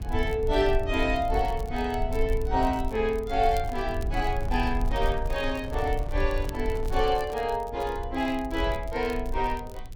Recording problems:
low-frequency rumble; below 60 Hz, SNR 6 dB
crackle; vinyl, SNR 24 dB
handling noise; from 3.5 to 7.5 s; peak -9 dB vs average level

